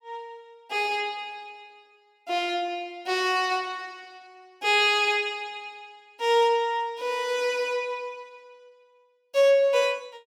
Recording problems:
none

